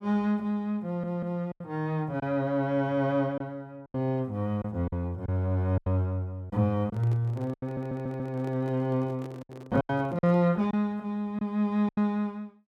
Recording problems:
packet loss; 7% of the sound replaced, filled with silence
audio stuttering; at 1 s and at 7.5 s
handling noise; from 7 to 10 s; peak -11 dB vs average level

